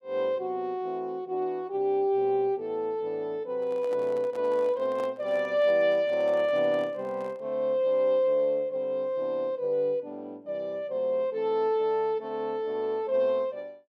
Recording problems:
microphone handling noise; from 3.5 to 7.5 s; peak -10 dB vs average level

